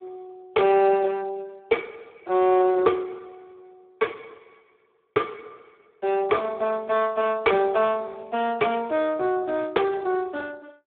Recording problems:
telephone audio; 260 Hz to 2.2 kHz, Speex

